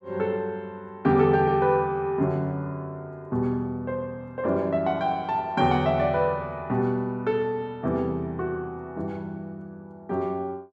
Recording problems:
none

